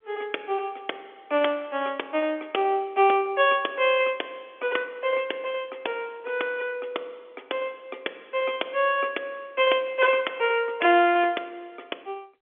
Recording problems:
telephone audio; 300 Hz to 3.5 kHz, G.711

